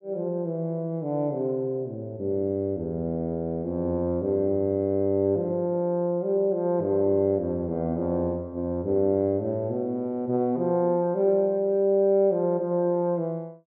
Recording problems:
none

